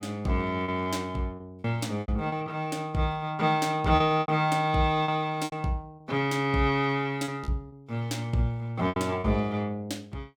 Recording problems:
lost packets; 8% of the sound replaced, filled with repeated pitch periods

